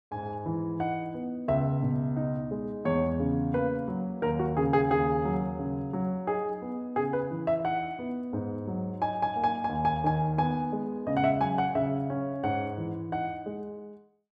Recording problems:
none

